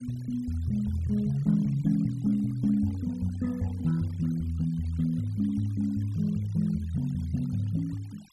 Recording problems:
denoising artefacts; signal-to-artefact ratio 26 dB

